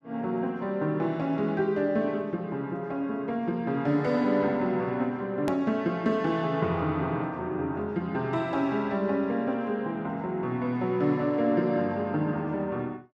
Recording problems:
edit click; at 5.5 s

